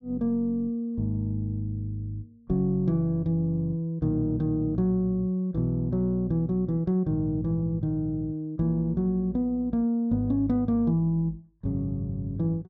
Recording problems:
none

